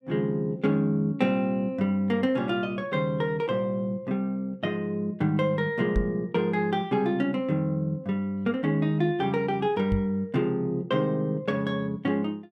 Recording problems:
knock on the microphone; at 6 s and at 10 s; peak +2 dB vs average level

